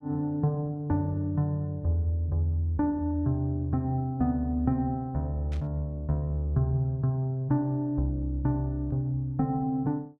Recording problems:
burst of static; at 5.5 s; peak -15 dB vs average level

